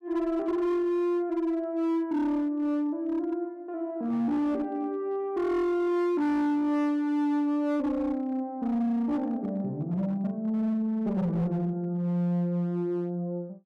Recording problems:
distortion; hard clipping, signal-to-distortion ratio 11 dB

